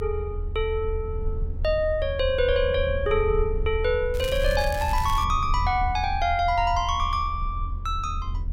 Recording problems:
low-frequency rumble; below 78 Hz, strongest tone 34 Hz, SNR 6 dB
crackling; from 4 to 5 s; loose cable, SNR 15 dB

